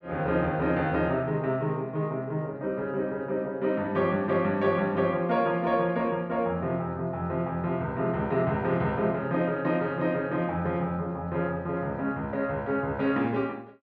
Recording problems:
none

